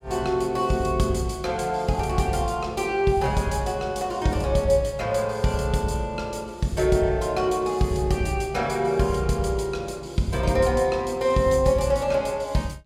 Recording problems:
none

